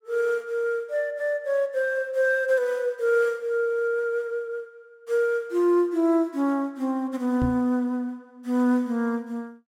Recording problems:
microphone thump; at 7.5 s; peak 0 dB vs average level

